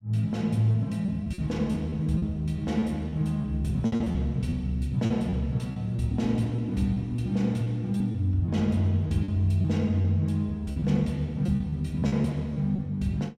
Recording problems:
lost packets; 8% of the sound replaced, filled with repeated pitch periods

